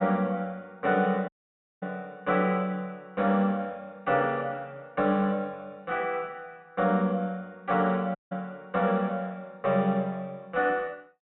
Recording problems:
treble missing; nothing above 3.7 kHz
audio cutting out; at 1.5 s for 0.5 s and at 8 s

